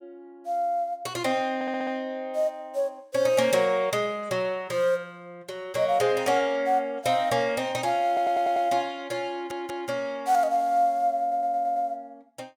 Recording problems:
audio stuttering; 4 times, first at 1.5 s

